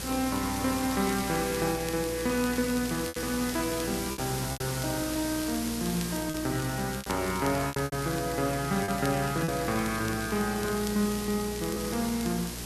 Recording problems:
mains hum; 60 Hz, harmonics up to 480 Hz, SNR 12 dB
background hiss; slope -1 dB per octave, SNR 7 dB
crackling; vinyl, SNR 16 dB
packet loss; 5% of the sound replaced, filled with repeated pitch periods

